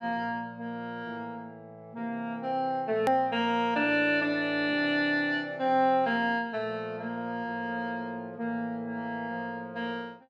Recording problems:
hard cut with a click; at 3 s

